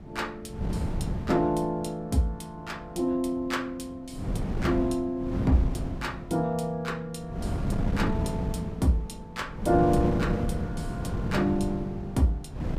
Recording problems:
wind on the microphone; below 220 Hz, SNR 3 dB

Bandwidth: 15 kHz